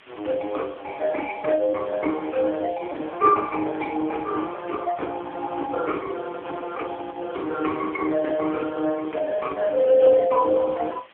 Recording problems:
telephone audio; 260 Hz to 2.3 kHz, AMR-NB
background hiss; SNR 25 dB

